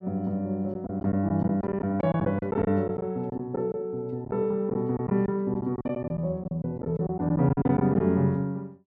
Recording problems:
lost packets; 11% of the sound replaced, filled with silence

